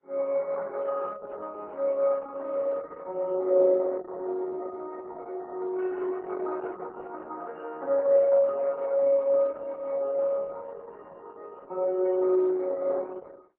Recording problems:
codec artefacts; MP3, then Opus, log-spectral distance 2 dB

